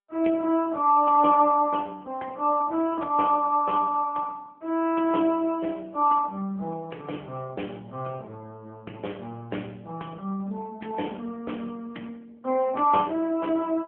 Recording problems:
telephone audio; 240 Hz to 2.8 kHz, AMR-NB

